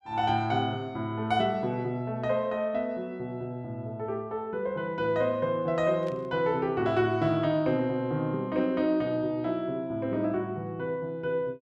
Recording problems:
burst of static; at 6 s; peak -15 dB vs average level

